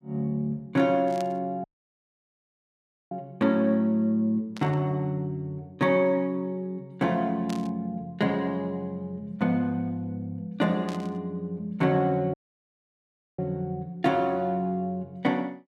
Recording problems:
burst of static; 4 times, first at 1 s; peak -9 dB vs average level
dropout; at 1.5 s for 1.5 s and at 12 s for 1 s

